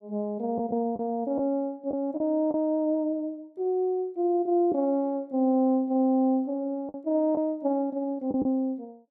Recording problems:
lost packets; 3% of the sound replaced, filled with the last packet

